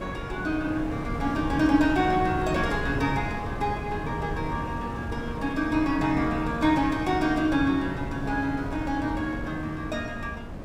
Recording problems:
wind noise; below 400 Hz, SNR 7 dB

